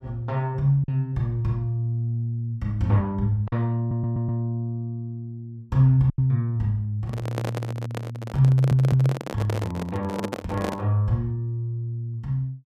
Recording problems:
lost packets; 1.4% of the sound replaced, filled with silence
audio stuttering; at 4 s and at 8.5 s
handling noise; from 7 to 11 s; peak 0 dB vs average level

